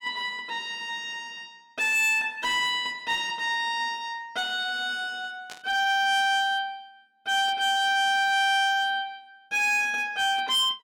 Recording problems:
distortion; hard clipping, signal-to-distortion ratio 12 dB
burst of static; at 5.5 s; peak -12 dB vs average level

